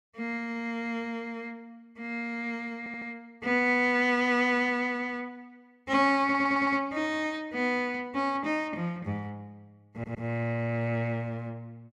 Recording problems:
audio stuttering; at 3 s, at 6 s and at 10 s

